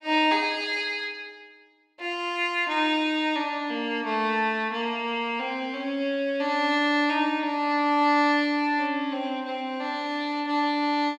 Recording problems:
none

